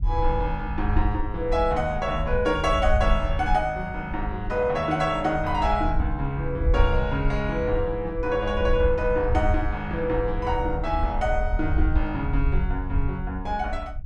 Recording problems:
low-frequency rumble; below 68 Hz, SNR 4 dB

